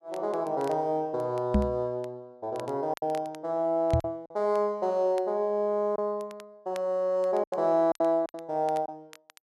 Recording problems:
crackle; vinyl, SNR 26 dB
lost packets; 5% of the sound replaced, filled with silence
microphone thump; at 1.5 s and at 4 s; peak +7 dB vs average level

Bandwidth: 12 kHz